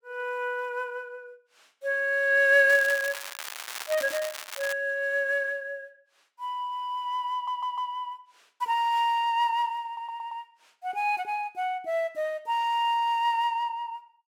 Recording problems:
crackle; from 2.5 to 4.5 s; loose cable, SNR 10 dB
audio stuttering; at 7.5 s and at 10 s

